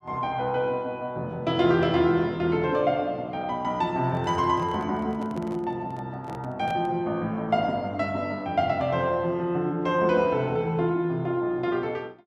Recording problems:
microphone handling noise; from 4 to 7 s; peak -9 dB vs average level

